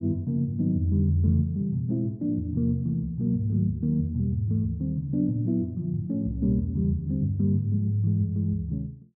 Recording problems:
none

